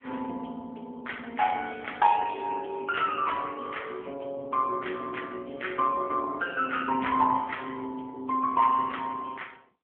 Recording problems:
telephone audio; 300 Hz to 3.3 kHz, AMR-NB

